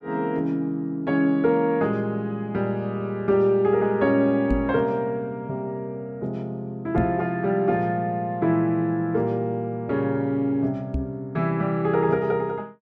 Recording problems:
microphone thump; at 4.5 s, at 7 s and at 11 s; peak +2 dB vs average level

